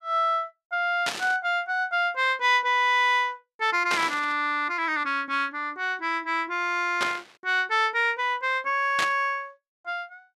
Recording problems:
burst of static; 4 times, first at 1 s; peak +1 dB vs average level

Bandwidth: 14 kHz